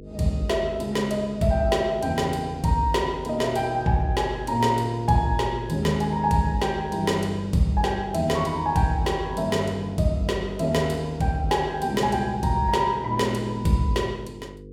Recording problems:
mains hum; 50 Hz, harmonics up to 500 Hz, SNR 18 dB

